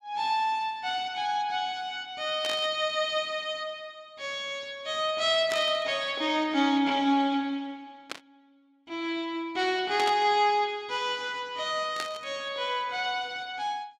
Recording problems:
static burst; 5 times, first at 2.5 s; peak -1 dB vs average level

